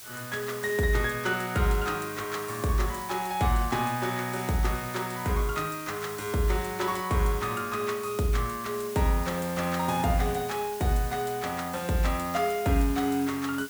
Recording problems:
background hiss; slope +2 dB per octave, SNR 13 dB

